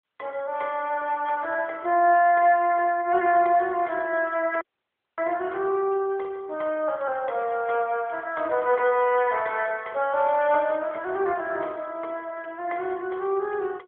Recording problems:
phone line; 320 Hz to 3.3 kHz, AMR-NB
audio cutting out; at 4.5 s for 0.5 s

